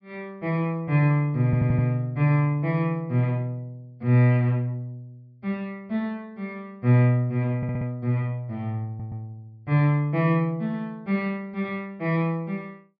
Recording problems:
low-pass filter; nothing above 5.5 kHz
audio stuttering; at 1.5 s, at 7.5 s and at 9 s

